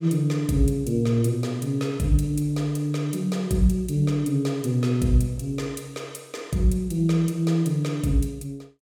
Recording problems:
none

